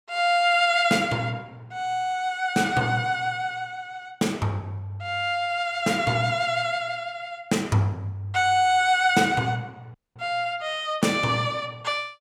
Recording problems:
audio cutting out; at 10 s

